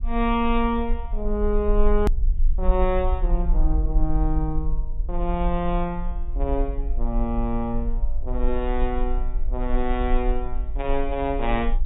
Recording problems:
treble missing; nothing above 4 kHz
low-frequency rumble; below 44 Hz, strongest tone 20 Hz, SNR 1 dB
edit click; at 2 s

